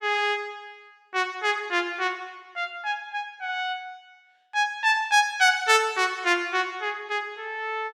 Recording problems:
none

